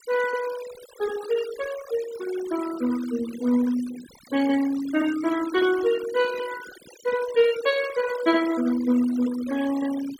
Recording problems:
denoising artefacts; signal-to-artefact ratio 15 dB

